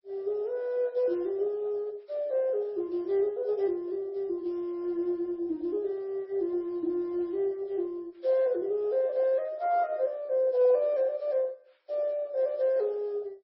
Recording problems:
codec artefacts; MP2, then MP3, log-spectral distance 2 dB

